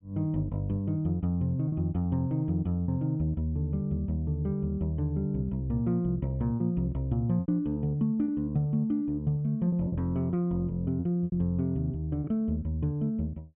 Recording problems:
low-pass filter; nothing above 4 kHz
lost packets; 4% of the sound replaced, filled with repeated pitch periods

